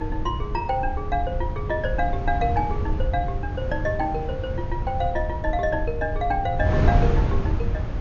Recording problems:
treble missing; nothing above 7 kHz
low-frequency rumble; below 88 Hz, SNR 5 dB
wind noise; below 150 Hz, SNR 2 dB

